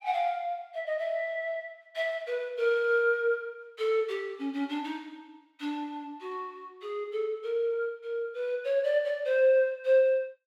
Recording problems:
none

